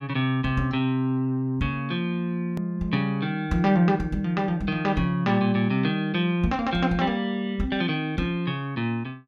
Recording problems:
edit click; at 2.5 s

